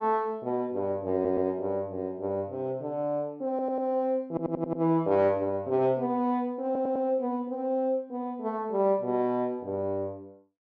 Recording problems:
audio stuttering; 4 times, first at 1 s

